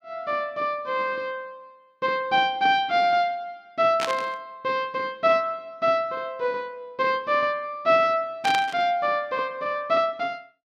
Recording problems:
burst of static; at 4 s and at 8.5 s; peak 0 dB vs average level

